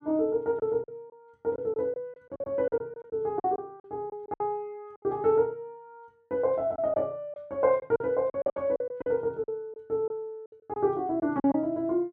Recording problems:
packet loss; 11% of the sound replaced, filled with silence

